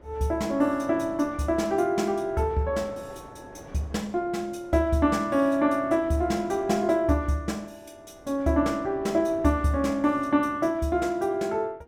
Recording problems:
wind noise; below 740 Hz, SNR 21 dB

